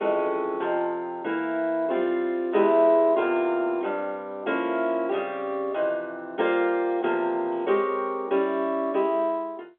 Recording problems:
phone line; 300 Hz to 3.7 kHz, G.711

